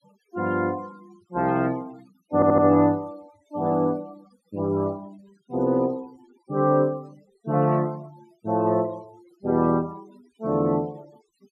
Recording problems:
denoising artefacts; signal-to-artefact ratio 28 dB
audio stuttering; at 2.5 s

